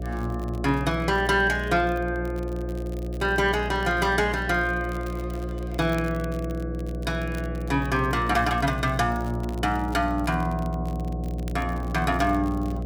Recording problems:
hum; 60 Hz, harmonics up to 720 Hz, SNR 6 dB
crackle; vinyl, SNR 25 dB

